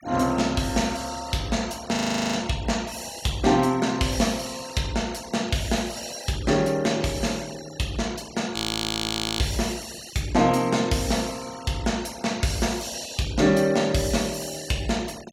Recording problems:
noise reduction artefacts; signal-to-artefact ratio 19 dB
frozen audio; at 2 s and at 8.5 s for 1 s

